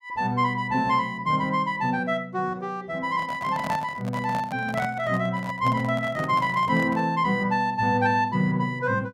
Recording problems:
microphone handling noise; from 3 to 7 s; peak -4 dB vs average level

